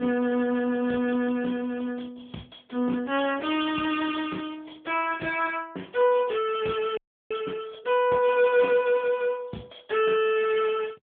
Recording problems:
telephone audio; 170 Hz to 3.4 kHz, AMR-NB
audio freezing; at 7 s

